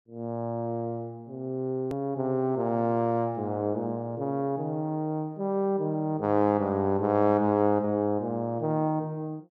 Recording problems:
click at an edit; at 2 s

